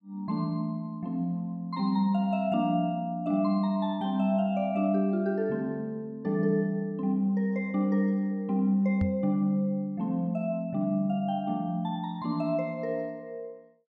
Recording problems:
microphone bump; at 9 s; peak +1 dB vs average level

